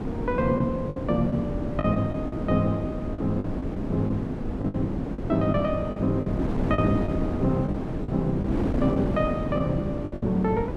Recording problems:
wind noise; below 350 Hz, SNR 2 dB
lost packets; 8% of the sound replaced, filled with the last packet

